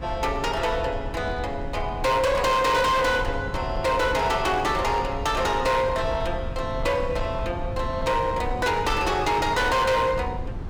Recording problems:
distorted audio; hard clipping, uneven, signal-to-distortion ratio 7 dB
low-frequency rumble; below 150 Hz, SNR 10 dB

